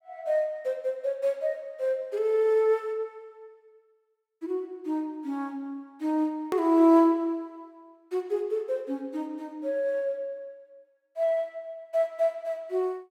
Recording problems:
edit click; at 6.5 s

